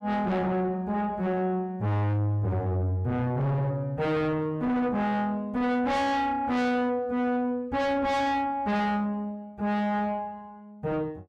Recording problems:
distortion; soft clipping, signal-to-distortion ratio 6 dB

